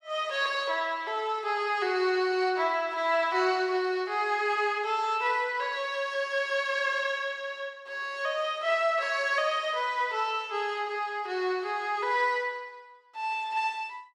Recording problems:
none

